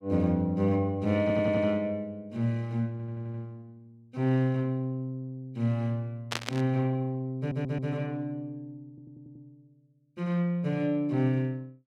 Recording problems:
audio stuttering; 4 times, first at 1 s
static burst; at 6.5 s; peak +2 dB vs average level

